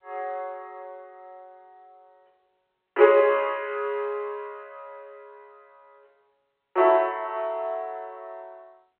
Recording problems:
telephone audio; 300 Hz to 3.2 kHz, G.711

